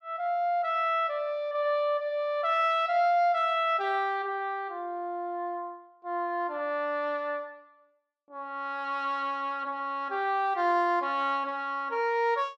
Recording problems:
none

